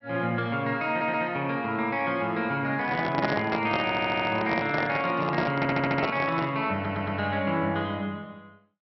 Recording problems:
treble cut off; nothing above 5.7 kHz
stutter; 4 times, first at 1 s
microphone handling noise; from 3 to 6.5 s; peak +3 dB vs average level

